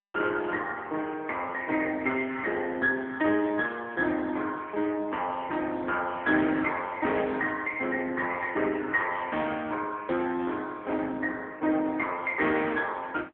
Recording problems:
telephone audio; 240 Hz to 3.6 kHz, AMR-NB

